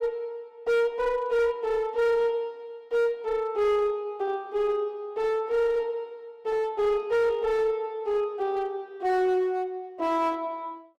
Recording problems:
distorted audio; hard clipping, uneven, signal-to-distortion ratio 10 dB

